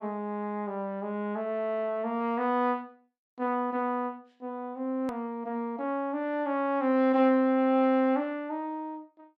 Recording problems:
hard cut with a click; at 5 s

